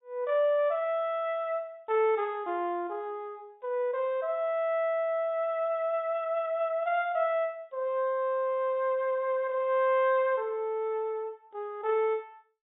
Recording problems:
low-pass filter; nothing above 4 kHz

